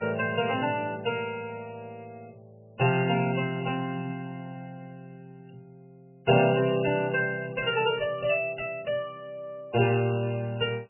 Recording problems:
codec artefacts; MP3, log-spectral distance 5 dB, nothing above 2.8 kHz

